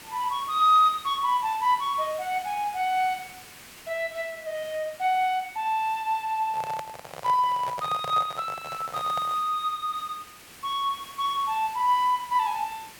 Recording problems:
hiss; slope -1 dB per octave, SNR 19 dB
microphone handling noise; from 6.5 to 9.5 s; peak -6 dB vs average level

